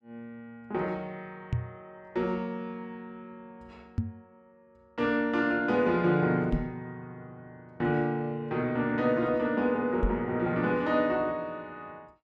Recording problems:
microphone bump; 4 times, first at 1.5 s; peak +3 dB vs average level

